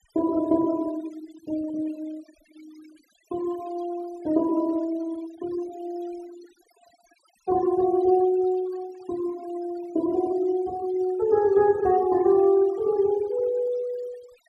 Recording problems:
denoising artefacts; signal-to-artefact ratio 23 dB

